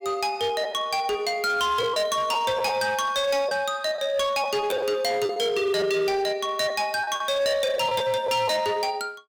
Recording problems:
distortion; hard clipping, signal-to-distortion ratio 11 dB
lost packets; 4% of the sound replaced, filled with the last packet

